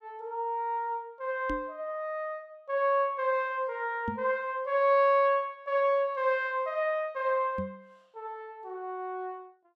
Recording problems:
microphone thump; at 1.5 s, at 4 s and at 7.5 s; peak -2 dB vs average level

